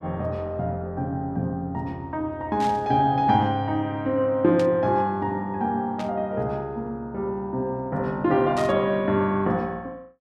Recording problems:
static burst; 4 times, first at 2.5 s; peak -9 dB vs average level

